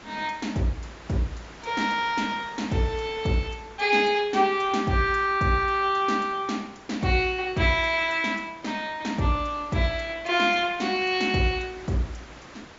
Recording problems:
treble missing; nothing above 7.3 kHz
lossy codec; MP2, log-spectral distance 3 dB
hiss; slope -4 dB per octave, SNR 20 dB

